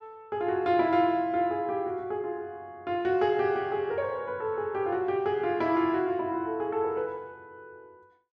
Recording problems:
none

